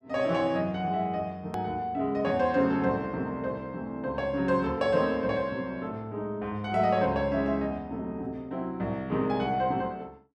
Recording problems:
click at an edit; at 1.5 s

